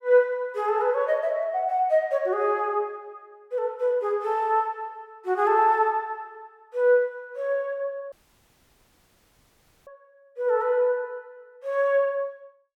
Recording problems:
dropout; at 8 s for 2 s

